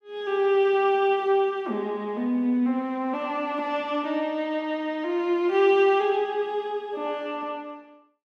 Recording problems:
none

